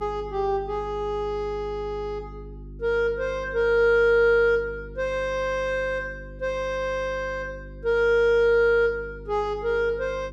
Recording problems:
hum; 50 Hz, harmonics up to 400 Hz, SNR 18 dB

